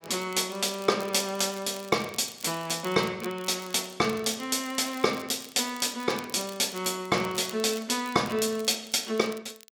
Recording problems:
crackling; vinyl, SNR 19 dB

